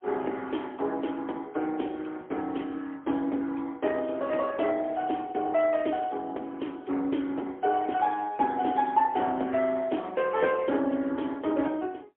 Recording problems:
phone line; 220 Hz to 3.3 kHz, AMR-NB, then MP3

